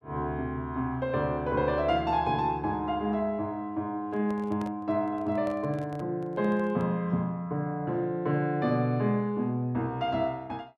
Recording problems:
handling noise; from 4 to 7 s; peak -10 dB vs average level

